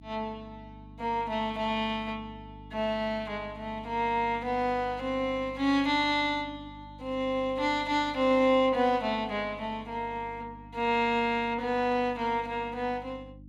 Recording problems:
hum; 50 Hz, harmonics up to 300 Hz, SNR 20 dB

